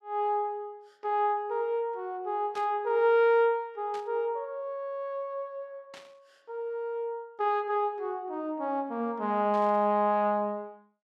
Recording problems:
burst of static; 4 times, first at 2.5 s; peak -13 dB vs average level

